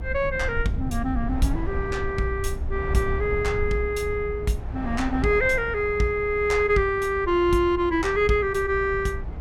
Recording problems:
low-frequency rumble; below 86 Hz, SNR 9 dB
wind noise; below 750 Hz, SNR 16 dB

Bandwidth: 17 kHz